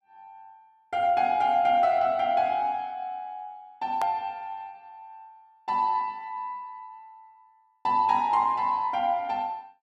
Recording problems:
click at an edit; at 4 s

